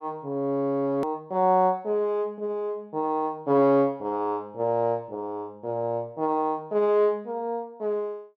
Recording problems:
edit click; at 1 s

